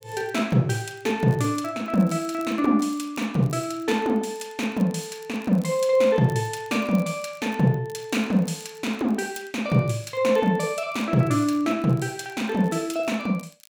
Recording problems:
crackle; vinyl, SNR 28 dB

